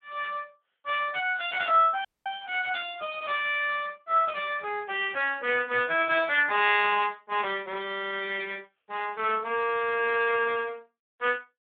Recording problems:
phone line; 240 Hz to 3.6 kHz, Speex
audio cutting out; at 2 s

